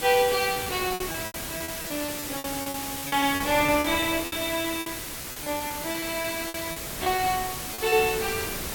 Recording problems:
background hiss; SNR 5 dB
wind noise; below 1.1 kHz, SNR 14 dB
packet loss; 14% of the sound replaced, filled with repeated pitch periods

